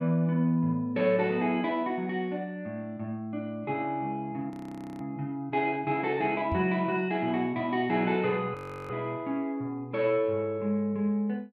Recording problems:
audio freezing; at 4.5 s for 0.5 s and at 8.5 s
microphone bump; at 6.5 s; peak -1 dB vs average level

